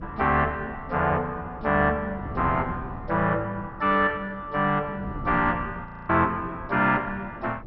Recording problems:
codec artefacts; MP2, log-spectral distance 2 dB, nothing above 5.3 kHz
wind noise; below 260 Hz, SNR 15 dB
audio freezing; at 6 s

